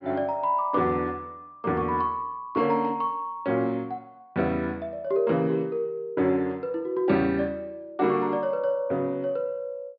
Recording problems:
low-pass filter; nothing above 5.5 kHz

